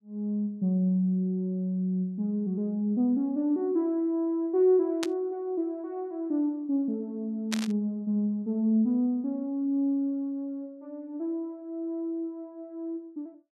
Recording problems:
static burst; at 5 s and at 7.5 s; peak +1 dB vs average level

